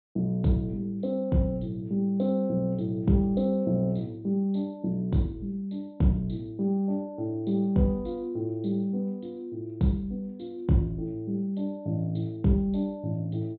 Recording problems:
treble missing; nothing above 4 kHz

